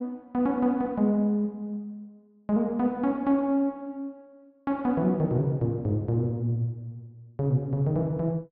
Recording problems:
treble cut off; nothing above 5.5 kHz

